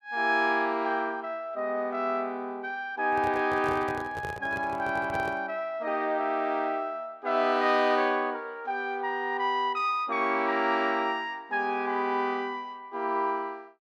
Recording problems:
handling noise; from 3 to 5.5 s; peak -5 dB vs average level

